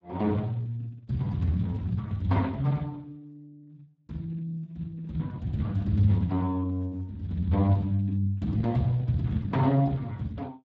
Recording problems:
codec artefacts; Speex, log-spectral distance 2 dB

